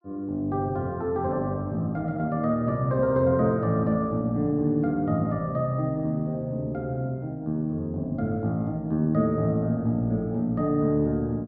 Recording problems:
none

